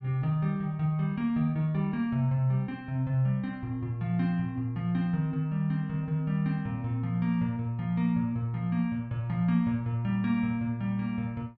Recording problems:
none

